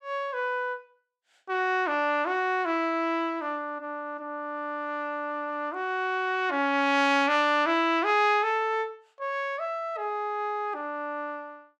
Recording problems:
none

